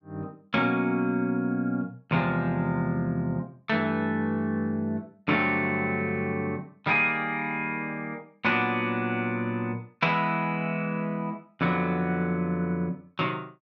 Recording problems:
none

